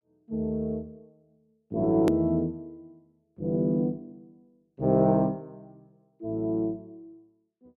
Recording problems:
click at an edit; at 2 s

